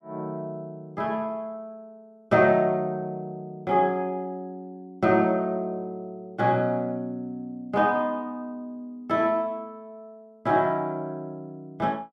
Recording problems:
none

